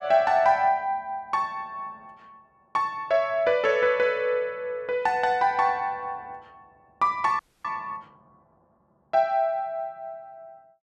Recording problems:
audio freezing; at 7.5 s

